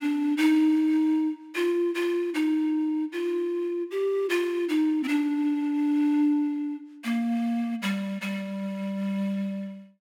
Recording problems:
none

